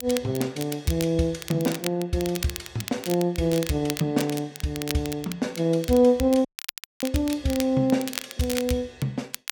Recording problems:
crackle; vinyl, SNR 11 dB
dropout; at 6.5 s for 0.5 s

